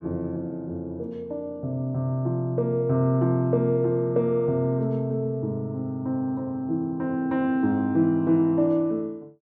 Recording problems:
none

